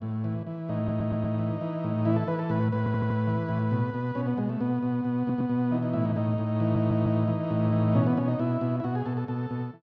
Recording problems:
stutter; 4 times, first at 1 s

